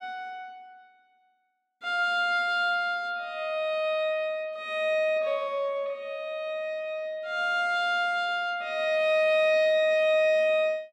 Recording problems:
none

